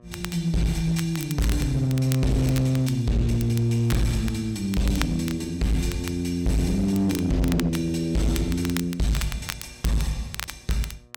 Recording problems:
distorted audio; hard clipping, signal-to-distortion ratio 8 dB
electrical hum; 60 Hz, harmonics up to 1.8 kHz, SNR 28 dB
crackle; vinyl, SNR 13 dB

